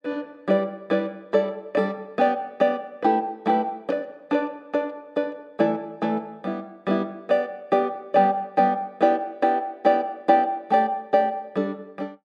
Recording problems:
none

